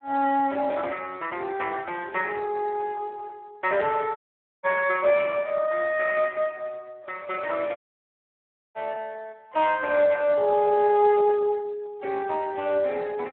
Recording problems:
phone line; 300 Hz to 2.9 kHz, Speex
audio cutting out; at 4 s and at 8 s for 1 s

